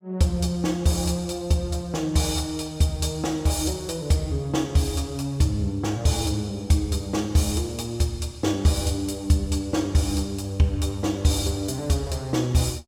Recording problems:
none

